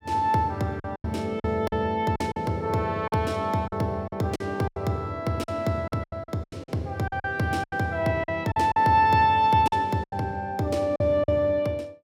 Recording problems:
lost packets; 11% of the sound replaced, filled with silence

